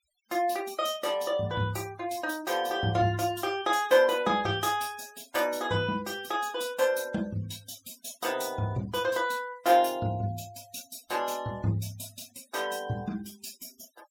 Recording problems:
noise reduction artefacts; signal-to-artefact ratio 23 dB

